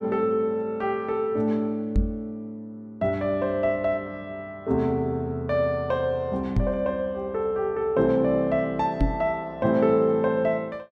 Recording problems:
knock on the microphone; at 2 s, at 6.5 s and at 9 s; peak +5 dB vs average level

